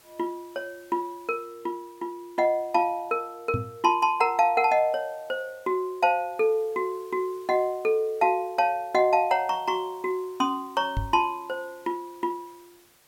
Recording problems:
background hiss; slope -2 dB per octave, SNR 29 dB
microphone thump; at 3.5 s and at 11 s; peak +1 dB vs average level

